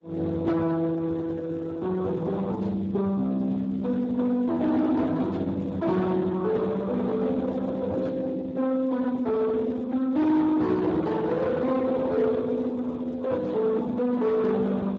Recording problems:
codec artefacts; Opus, then Speex, log-spectral distance 3 dB
distorted audio; soft clipping, signal-to-distortion ratio 11 dB

